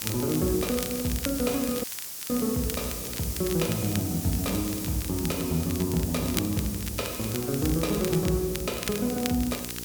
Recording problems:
hum; 60 Hz, harmonics up to 900 Hz, SNR 15 dB
background hiss; SNR 6 dB
crackle; vinyl, SNR 10 dB
audio cutting out; at 2 s

